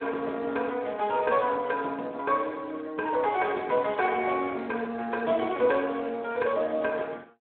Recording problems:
telephone audio; 280 Hz to 3.8 kHz, Speex

